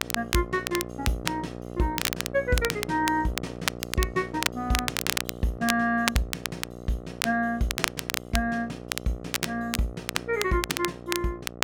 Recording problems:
hum; 60 Hz, harmonics up to 1.4 kHz, SNR 11 dB
crackling; vinyl, SNR 2 dB

